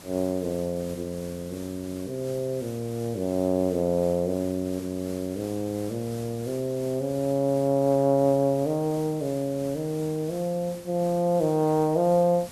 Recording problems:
background hiss; slope -3 dB per octave, SNR 18 dB

